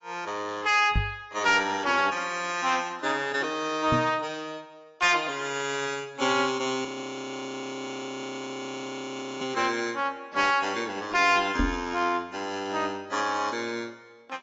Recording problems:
lossy compression; AAC, log-spectral distance 3 dB, nothing above 7.3 kHz
distortion; soft clipping, signal-to-distortion ratio 11 dB
microphone thump; at 1 s, at 4 s and at 12 s; peak +4 dB vs average level
frozen audio; at 7 s for 2.5 s

